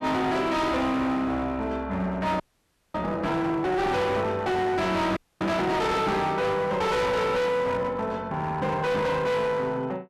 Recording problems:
distortion; hard clipping, uneven, signal-to-distortion ratio 7 dB
frozen audio; at 2.5 s for 0.5 s and at 5 s

